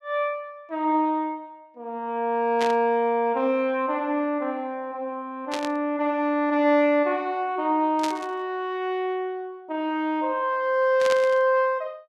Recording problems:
burst of static; 4 times, first at 2.5 s; peak -3 dB vs average level

